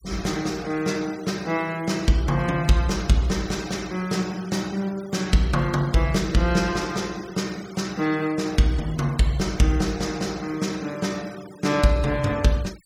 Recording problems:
noise reduction artefacts; signal-to-artefact ratio 20 dB

